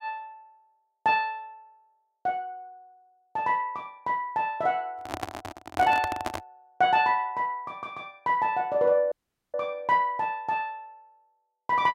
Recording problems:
handling noise; from 5 to 6.5 s; peak 0 dB vs average level
audio cutting out; at 9 s

